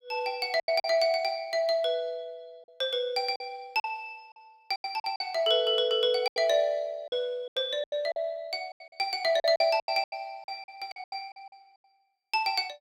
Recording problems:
lost packets; 12% of the sound replaced, filled with silence

